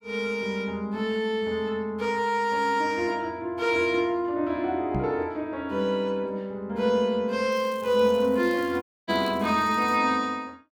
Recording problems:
microphone thump; at 5 s; peak 0 dB vs average level
crackle; from 7.5 to 10 s; loose cable, SNR 25 dB
audio cutting out; at 9 s

